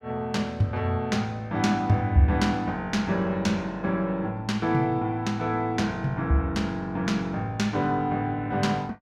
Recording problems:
none

